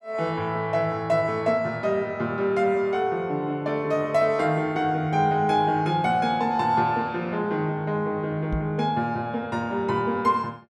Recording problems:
microphone thump; at 8.5 s; peak -1 dB vs average level

